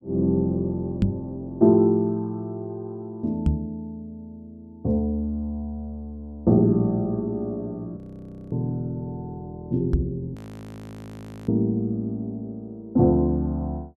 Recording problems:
microphone bump; at 1 s, at 3.5 s and at 10 s; peak +7 dB vs average level
audio freezing; at 8 s for 0.5 s and at 10 s for 1 s

